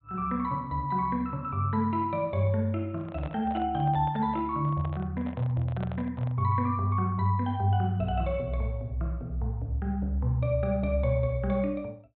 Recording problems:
low-pass filter; nothing above 4 kHz
microphone handling noise; from 3 to 6.5 s; peak -7 dB vs average level

